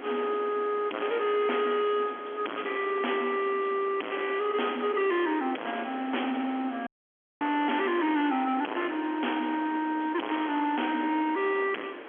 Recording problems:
telephone audio; 240 Hz to 3.3 kHz, G.711
distorted audio; hard clipping, signal-to-distortion ratio 3 dB
background hiss; SNR 14 dB
dropout; at 7 s for 0.5 s

